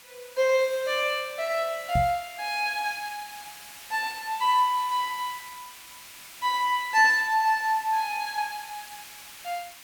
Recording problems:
hiss; SNR 17 dB
knock on the microphone; at 2 s; peak +1 dB vs average level

